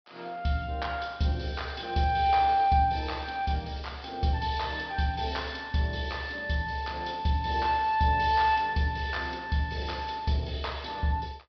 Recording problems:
treble cut off; nothing above 5.5 kHz

